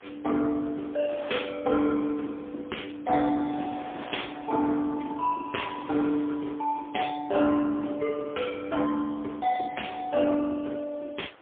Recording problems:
telephone audio; 260 Hz to 3.4 kHz, AMR-NB, then MP3
wind noise; below 2 kHz, SNR 19 dB

